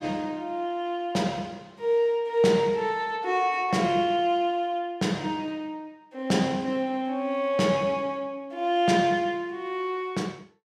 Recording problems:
none

